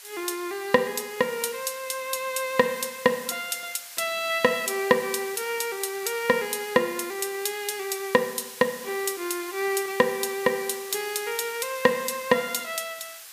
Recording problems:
background hiss; SNR 13 dB

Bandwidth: 15 kHz